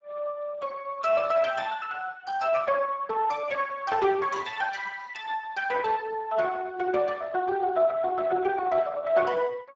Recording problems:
lossy codec; Speex, log-spectral distance 3 dB

